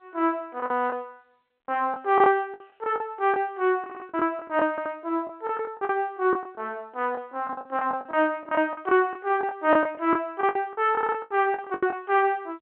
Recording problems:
phone line; 260 Hz to 3.3 kHz, G.711
packet loss; 13% of the sound replaced, filled with the last packet
audio stuttering; at 4 s, at 4.5 s and at 11 s

